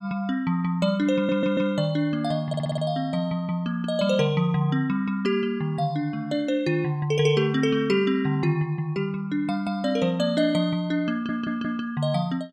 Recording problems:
stutter; at 1 s, at 2.5 s and at 11 s

